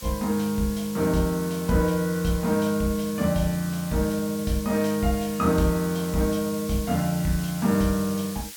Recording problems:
background hiss; slope +3 dB per octave, SNR 13 dB

